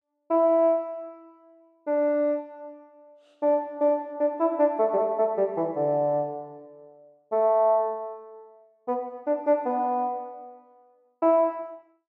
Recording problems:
none

